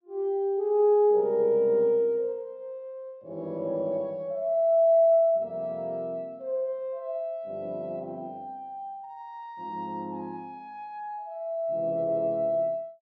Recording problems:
none

